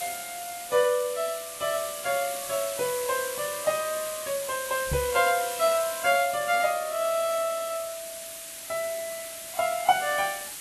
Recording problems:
codec artefacts; Vorbis, log-spectral distance 14 dB
hiss; SNR 8 dB
microphone bump; at 5 s; peak 0 dB vs average level

